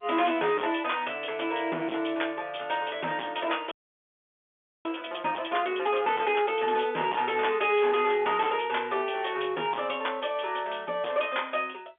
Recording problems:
telephone audio; 260 Hz to 3.5 kHz, G.711
distorted audio; hard clipping, signal-to-distortion ratio 11 dB
frozen audio; at 3.5 s for 1 s

